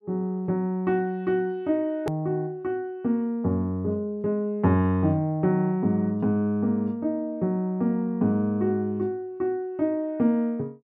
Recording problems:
click at an edit; at 2 s

